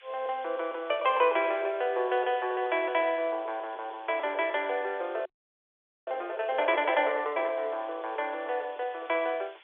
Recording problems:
phone line; 340 Hz to 3.6 kHz, G.711
hiss; SNR 25 dB
audio freezing; at 5.5 s for 1 s

